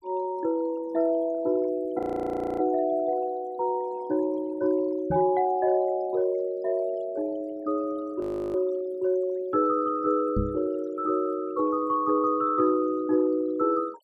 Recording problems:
noise reduction artefacts; signal-to-artefact ratio 24 dB
audio freezing; at 2 s for 0.5 s and at 8 s
knock on the microphone; at 5 s and at 10 s; peak +2 dB vs average level

